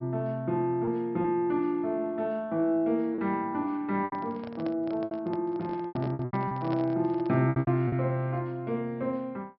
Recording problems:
treble cut off; nothing above 5.4 kHz
packet loss; 7% of the sound replaced, filled with repeated pitch periods
microphone handling noise; from 4 to 7.5 s; peak -5 dB vs average level

